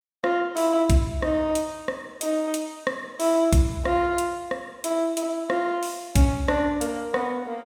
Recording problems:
none

